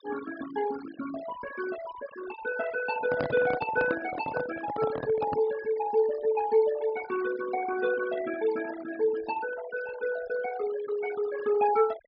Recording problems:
low-pass filter; nothing above 5.5 kHz
denoising artefacts; signal-to-artefact ratio 13 dB
microphone handling noise; from 3 to 5.5 s; peak +1 dB vs average level

